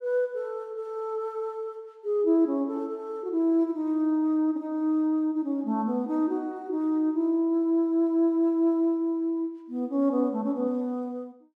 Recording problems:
none

